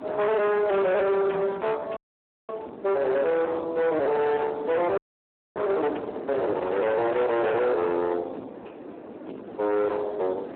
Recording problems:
telephone audio; 990 Hz to 3.2 kHz, Speex
distorted audio; soft clipping, signal-to-distortion ratio 6 dB
wind noise; below 880 Hz, SNR 15 dB
audio freezing; at 2 s for 0.5 s and at 5 s for 0.5 s

